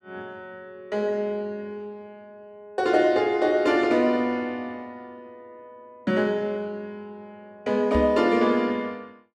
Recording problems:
knock on the microphone; at 8 s; peak -1 dB vs average level

